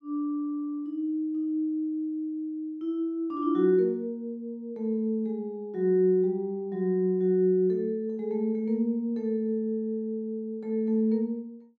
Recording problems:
none

